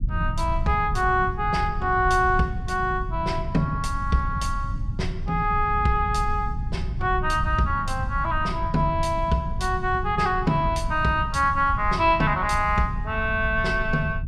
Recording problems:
rumble; below 110 Hz, SNR 7 dB

